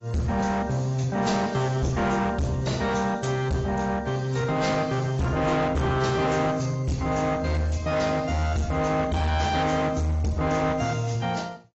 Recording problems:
lossy compression; AAC, log-spectral distance 3 dB, nothing above 7.6 kHz
distorted audio; hard clipping, signal-to-distortion ratio 8 dB

